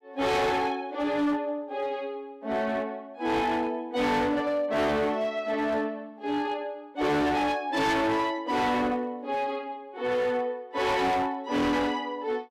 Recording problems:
distortion; hard clipping, signal-to-distortion ratio 7 dB

